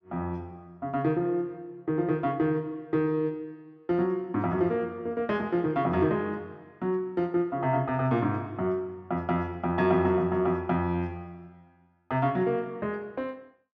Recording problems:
none

